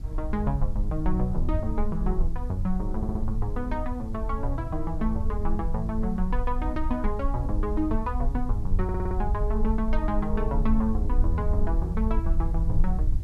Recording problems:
background hiss; SNR 27 dB
rumble; below 54 Hz, strongest tone 20 Hz, SNR 0 dB
audio stuttering; at 3 s and at 9 s

